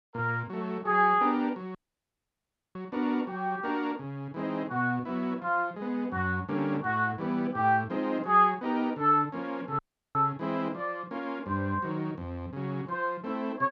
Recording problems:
dropout; at 2 s for 1 s and at 10 s

